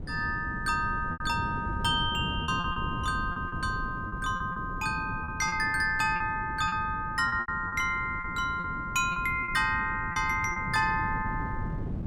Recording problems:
wind noise; below 210 Hz, SNR 9 dB
packet loss; 8% of the sound replaced, filled with repeated pitch periods

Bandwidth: 18 kHz